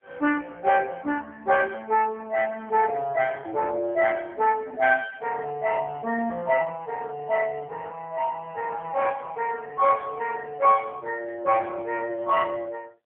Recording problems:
phone line; 260 Hz to 3.1 kHz, AMR-NB

